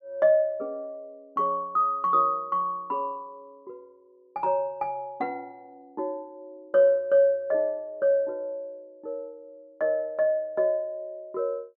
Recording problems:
none

